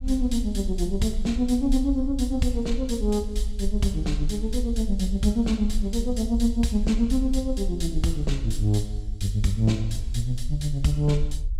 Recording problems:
low-frequency rumble; below 52 Hz, SNR 5 dB

